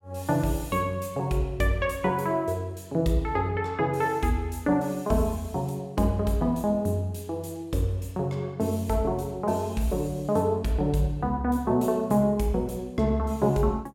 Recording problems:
none

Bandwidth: 16.5 kHz